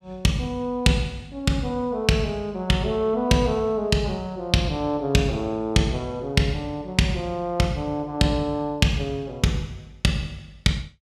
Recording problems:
none

